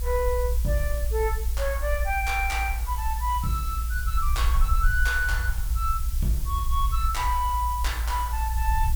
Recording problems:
background hiss; slope +1 dB per octave, SNR 11 dB
low-frequency rumble; below 58 Hz, strongest tone 56 Hz, SNR 0 dB

